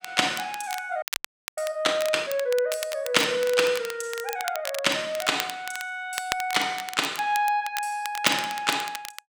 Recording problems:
crackle; vinyl, SNR 10 dB
frozen audio; at 1 s for 0.5 s

